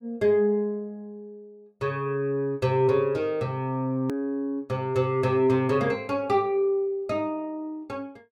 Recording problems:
hard cut with a click; at 4 s

